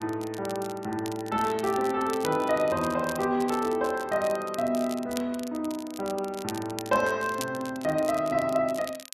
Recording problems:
crackle; vinyl, SNR 15 dB

